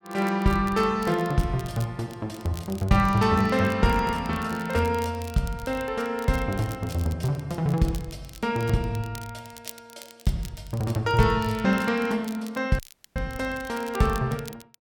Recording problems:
crackling; vinyl, SNR 20 dB
dropout; at 13 s

